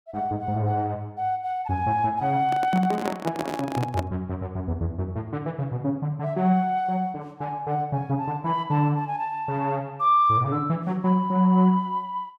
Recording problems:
handling noise; from 2.5 to 4 s; peak -1 dB vs average level

